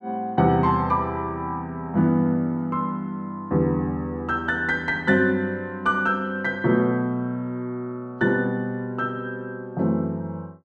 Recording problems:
none

